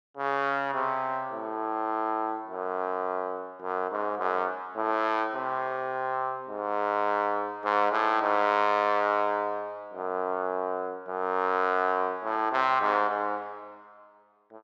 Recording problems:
none

